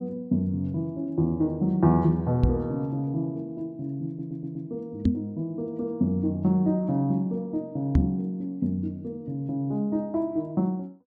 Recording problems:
microphone bump; at 2.5 s, at 5 s and at 8 s; peak +9 dB vs average level
stutter; at 4 s

